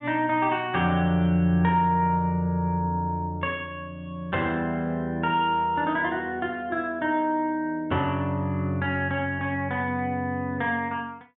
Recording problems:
treble missing; nothing above 4 kHz

